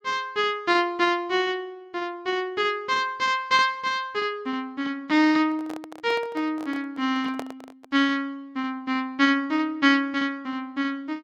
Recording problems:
handling noise; from 5.5 to 8 s; peak -5 dB vs average level

